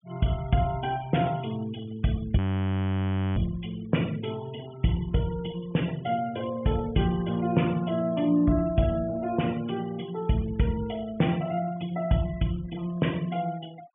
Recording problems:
low-pass filter; nothing above 3.3 kHz
noise reduction artefacts; signal-to-artefact ratio 20 dB
frozen audio; at 2.5 s for 1 s

